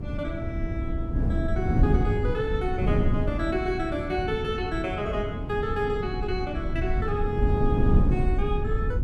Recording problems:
low-frequency rumble; below 66 Hz, SNR 5 dB
wind noise; below 200 Hz, SNR -1 dB

